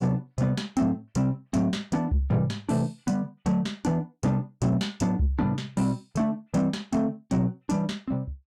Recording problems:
distorted audio; soft clipping, signal-to-distortion ratio 12 dB

